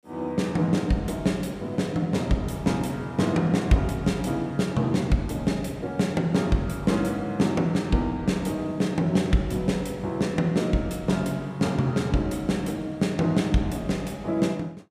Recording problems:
none

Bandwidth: 15.5 kHz